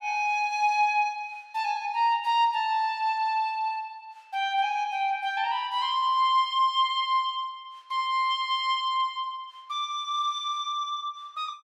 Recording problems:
none

